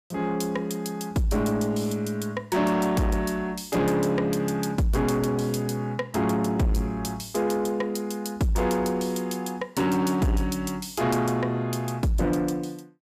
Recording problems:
distortion; soft clipping, signal-to-distortion ratio 11 dB

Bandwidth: 15 kHz